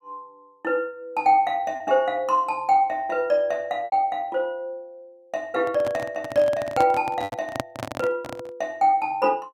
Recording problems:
lost packets; 2% of the sound replaced, filled with repeated pitch periods
microphone handling noise; from 5.5 to 8.5 s; peak +1 dB vs average level

